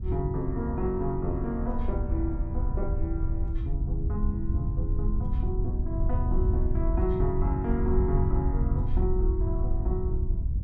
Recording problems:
wind noise; below 84 Hz, SNR -3 dB

